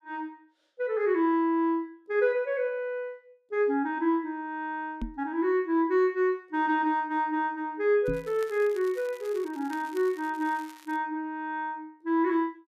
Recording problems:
microphone bump; at 5 s and at 8 s; peak -2 dB vs average level
crackling; from 8 to 11 s; loose cable, SNR 24 dB

